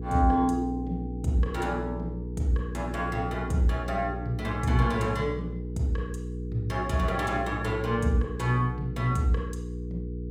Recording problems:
hum; 60 Hz, harmonics up to 480 Hz, SNR 7 dB

